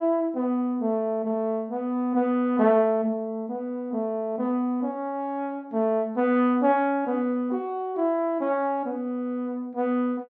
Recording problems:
none

